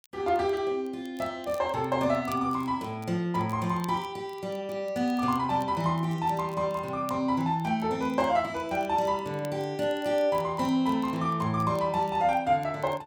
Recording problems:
crackling; vinyl, SNR 26 dB

